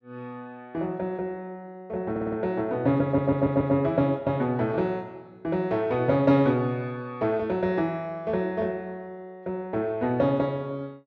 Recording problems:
audio stuttering; at 2 s and at 3 s

